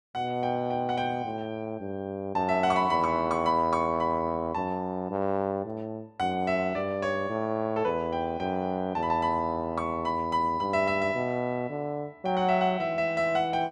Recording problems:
none

